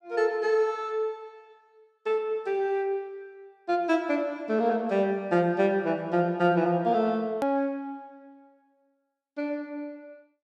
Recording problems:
hard cut with a click; at 7.5 s

